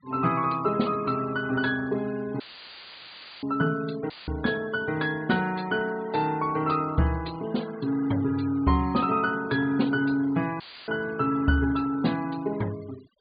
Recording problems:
treble cut off; nothing above 4.8 kHz
noise reduction artefacts; signal-to-artefact ratio 20 dB
audio cutting out; at 2.5 s for 1 s, at 4 s and at 11 s; filled with static

